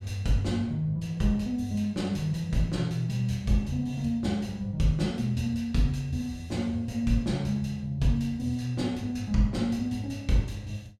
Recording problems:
none

